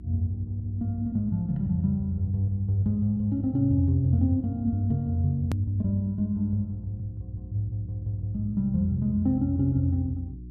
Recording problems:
mains hum; 60 Hz, harmonics up to 360 Hz, SNR 17 dB
hard cut with a click; at 5.5 s

